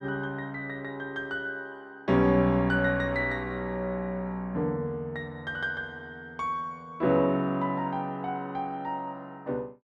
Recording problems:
none

